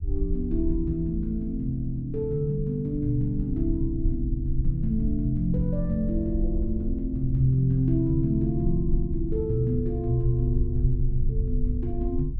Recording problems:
rumble; below 64 Hz, SNR 5 dB

